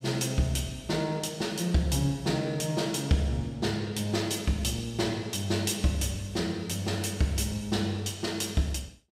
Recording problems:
none

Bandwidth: 15.5 kHz